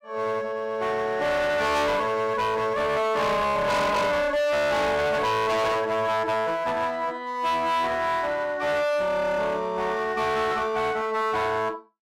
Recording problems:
distorted audio; hard clipping, uneven, signal-to-distortion ratio 6 dB

